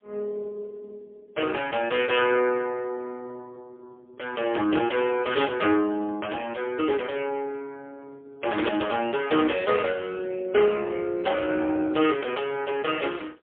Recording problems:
phone line; 260 Hz to 3.5 kHz, AMR-NB, then MP3

